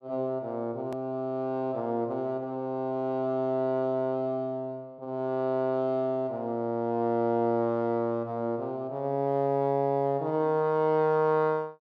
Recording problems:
click at an edit; at 1 s

